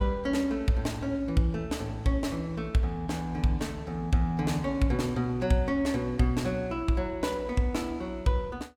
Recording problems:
none

